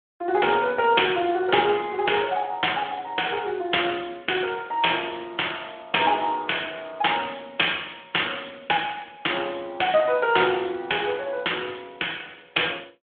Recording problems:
telephone audio; 280 Hz to 3.4 kHz, Speex

